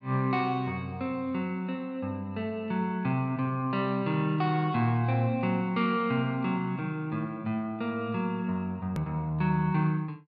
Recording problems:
treble cut off; nothing above 6.9 kHz
hard cut with a click; at 9 s

